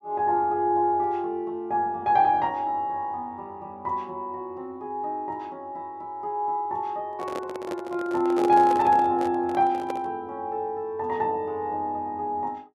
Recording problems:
handling noise; from 7 to 10 s; peak -2 dB vs average level

